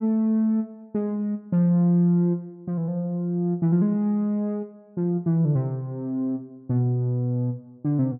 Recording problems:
none

